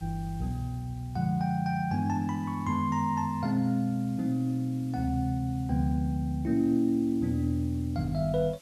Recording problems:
background hiss; slope -1 dB per octave, SNR 27 dB

